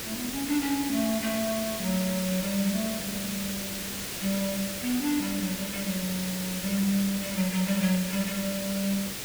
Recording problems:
hiss; SNR 3 dB

